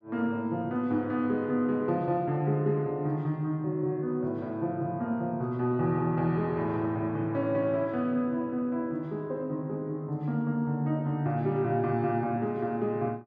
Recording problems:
none

